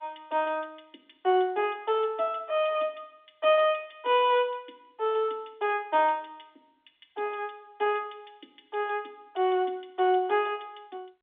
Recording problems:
phone line; 240 Hz to 3.7 kHz, G.711

